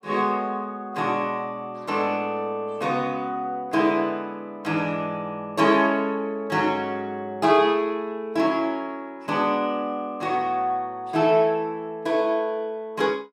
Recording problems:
none

